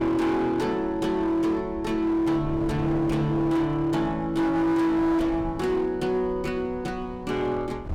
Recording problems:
distorted audio; hard clipping, signal-to-distortion ratio 10 dB
wind on the microphone; below 200 Hz, SNR 16 dB

